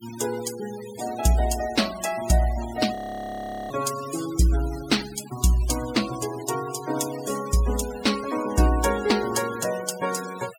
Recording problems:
noise reduction artefacts; signal-to-artefact ratio 13 dB
audio freezing; at 3 s for 1 s

